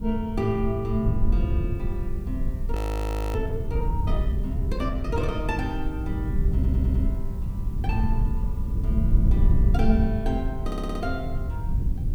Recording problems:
background hiss; slope -2 dB per octave, SNR 27 dB
wind on the microphone; below 88 Hz, SNR -4 dB
audio freezing; at 3 s for 0.5 s
stutter; at 6.5 s and at 11 s

